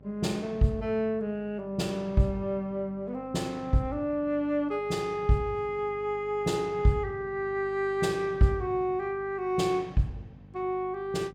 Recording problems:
hum; 50 Hz, harmonics up to 800 Hz, SNR 22 dB

